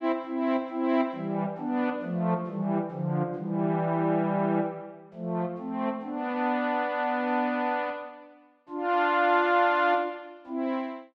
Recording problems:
none

